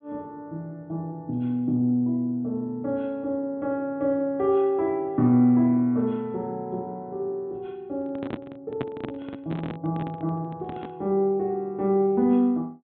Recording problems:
low-pass filter; nothing above 4 kHz
microphone handling noise; from 8 to 11 s; peak -1 dB vs average level

